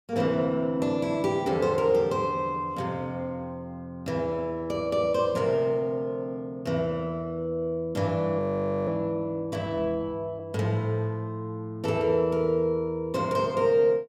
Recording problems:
frozen audio; at 8.5 s

